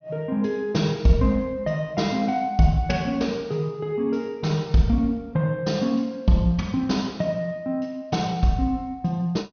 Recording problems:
low-pass filter; nothing above 6.4 kHz

